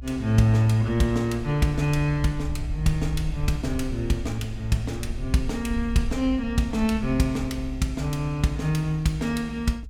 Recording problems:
rumble; below 66 Hz, SNR 11 dB

